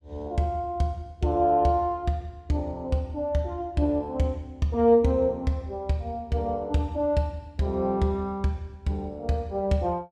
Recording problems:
none

